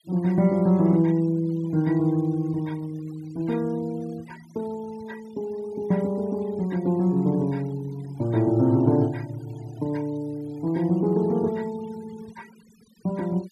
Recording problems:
noise reduction artefacts; signal-to-artefact ratio 26 dB

